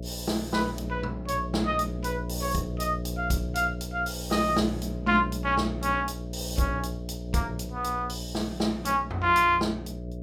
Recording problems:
hum; 60 Hz, harmonics up to 660 Hz, SNR 7 dB

